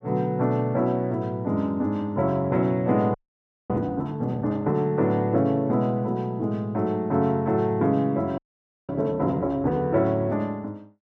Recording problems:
audio freezing; at 3 s for 0.5 s and at 8.5 s for 0.5 s

